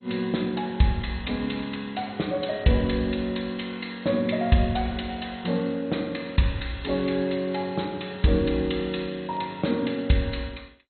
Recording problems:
lossy codec; MP2, log-spectral distance 6 dB, nothing above 4.2 kHz
crackling; from 7 to 9.5 s; loose cable, SNR 27 dB

